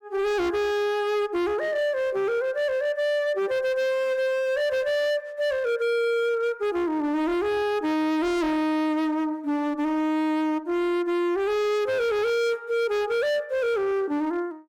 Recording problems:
distortion; hard clipping, signal-to-distortion ratio 10 dB

